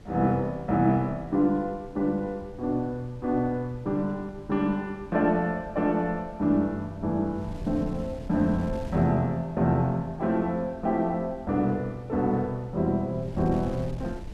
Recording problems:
wind on the microphone; below 150 Hz, SNR 17 dB

